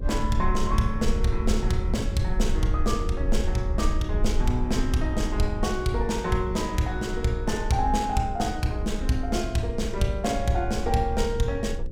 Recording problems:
hum; 60 Hz, harmonics up to 540 Hz, SNR 15 dB
rumble; below 60 Hz, SNR 4 dB

